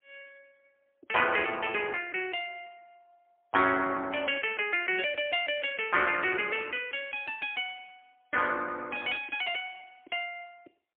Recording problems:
phone line; 240 Hz to 3.3 kHz, AMR-NB, then MP3

